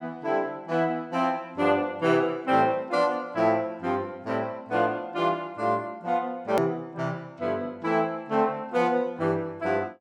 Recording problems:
click at an edit; at 6.5 s

